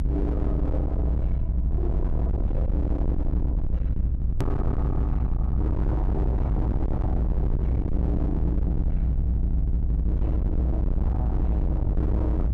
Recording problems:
distortion; hard clipping, signal-to-distortion ratio 6 dB
electrical hum; 50 Hz, harmonics up to 600 Hz, SNR 25 dB
low-frequency rumble; below 94 Hz, SNR -5 dB
click at an edit; at 4.5 s

